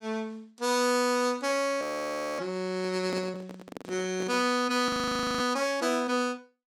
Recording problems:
frozen audio; at 2 s for 0.5 s and at 5 s for 0.5 s
microphone handling noise; from 3 to 4.5 s; peak -5 dB vs average level

